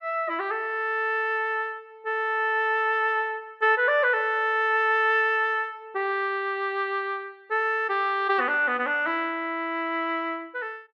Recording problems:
none

